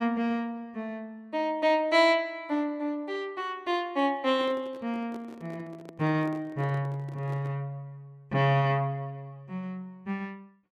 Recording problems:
microphone handling noise; from 4 to 7.5 s; peak -11 dB vs average level

